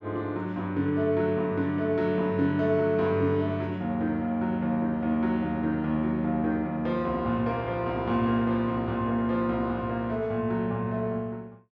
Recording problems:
none

